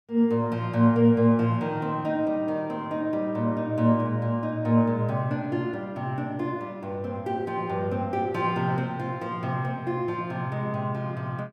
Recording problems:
none

